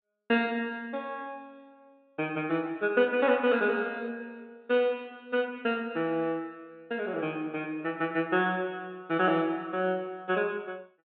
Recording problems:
low-pass filter; nothing above 4 kHz

